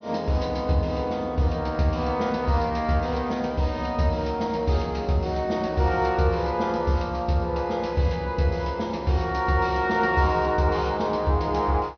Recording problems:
treble cut off; nothing above 6.1 kHz

